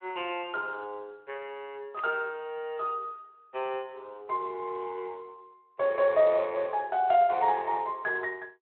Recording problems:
phone line; 320 Hz to 3.1 kHz, Speex
burst of static; at 2 s; peak -13 dB vs average level

